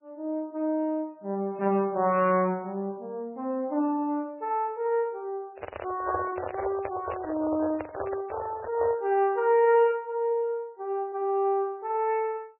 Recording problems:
lossy compression; MP3, log-spectral distance 2 dB, nothing above 2.8 kHz
microphone handling noise; from 5.5 to 9 s; peak 0 dB vs average level

